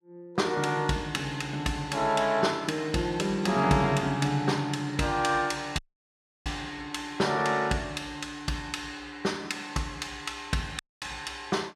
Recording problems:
audio cutting out; at 6 s for 0.5 s and at 11 s

